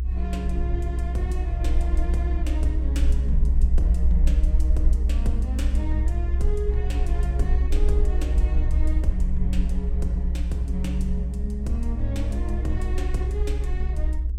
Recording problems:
electrical hum; 50 Hz, harmonics up to 800 Hz, SNR 19 dB
low-frequency rumble; below 62 Hz, SNR -7 dB

